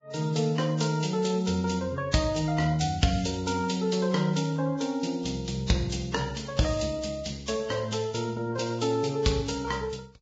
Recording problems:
lossy codec; Vorbis, log-spectral distance 5 dB, nothing above 7.6 kHz

